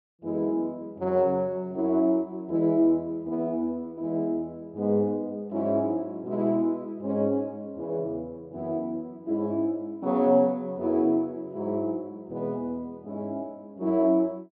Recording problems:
treble missing; nothing above 5.1 kHz

